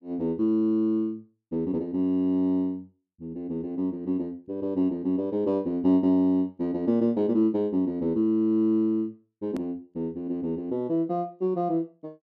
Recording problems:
hard cut with a click; at 9.5 s

